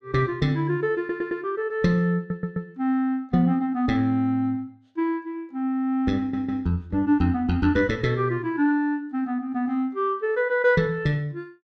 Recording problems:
stutter; at 1 s, at 2 s and at 6 s

